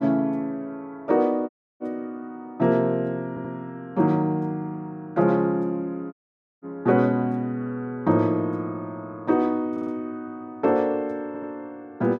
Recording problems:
dropout; at 1.5 s and at 6 s
audio stuttering; at 3.5 s, at 9.5 s and at 11 s

